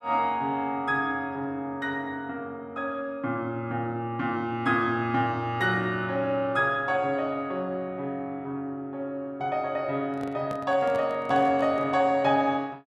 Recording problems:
handling noise; from 10 to 12 s; peak -8 dB vs average level

